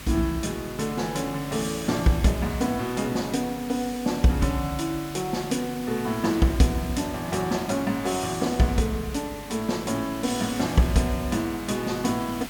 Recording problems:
electrical hum; 50 Hz, harmonics up to 300 Hz, SNR 21 dB
hiss; slope -1 dB per octave, SNR 14 dB

